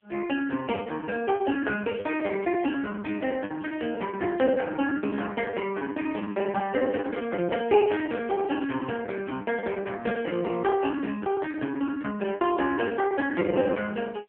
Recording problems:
phone line; 170 Hz to 3.3 kHz, AMR-NB
background hiss; SNR 46 dB
lost packets; 18% of the sound replaced, filled with the last packet
crackle; from 1.5 to 3 s and from 6.5 to 9 s; loose cable, SNR 27 dB

